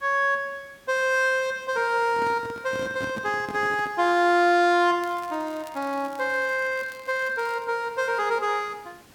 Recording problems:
background hiss; slope -3 dB per octave, SNR 28 dB
microphone handling noise; from 2 to 4 s; peak -6 dB vs average level
crackling; from 5 to 7.5 s; loose cable, SNR 25 dB

